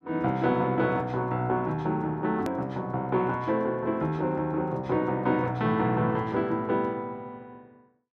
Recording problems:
edit click; at 2.5 s

